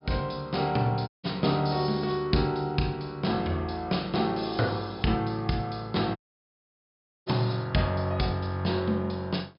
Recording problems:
low-pass filter; nothing above 5.5 kHz
dropout; at 1 s and at 6 s for 1 s

